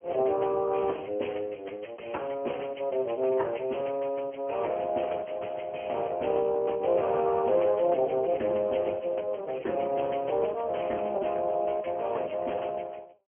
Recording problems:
telephone audio; 280 Hz to 3.1 kHz, Speex

